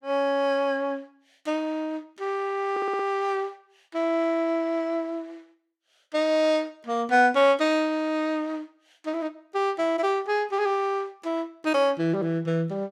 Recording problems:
audio stuttering; at 2.5 s

